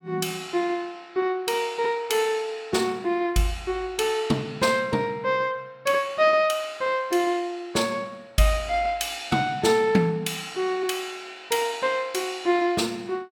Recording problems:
none

